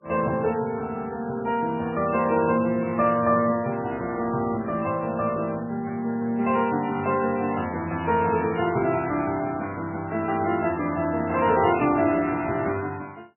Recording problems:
codec artefacts; MP3, log-spectral distance 3 dB, nothing above 2.4 kHz

